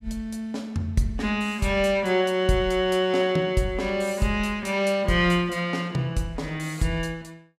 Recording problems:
none

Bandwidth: 15.5 kHz